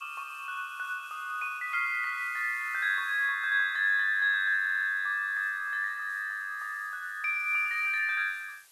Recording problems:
background hiss; slope +3 dB per octave, SNR 27 dB
stutter; at 4.5 s

